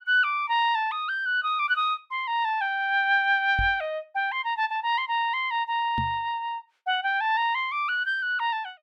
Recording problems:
microphone thump; at 3.5 s and at 6 s; peak -2 dB vs average level

